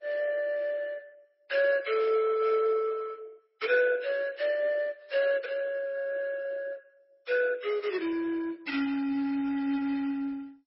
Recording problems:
lossy codec; MP2, then MP3, log-spectral distance 3 dB, nothing above 5.5 kHz

